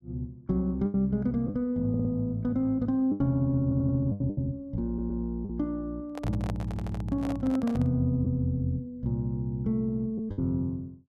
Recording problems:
lost packets; 5% of the sound replaced, filled with the last packet
audio stuttering; 4 times, first at 2 s
handling noise; from 6 to 8 s; peak -5 dB vs average level

